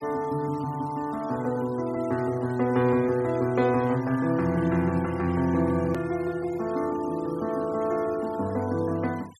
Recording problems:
noise reduction artefacts; signal-to-artefact ratio 22 dB
edit click; at 6 s

